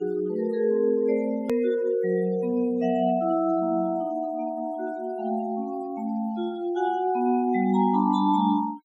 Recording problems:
noise reduction artefacts; signal-to-artefact ratio 24 dB
edit click; at 1.5 s

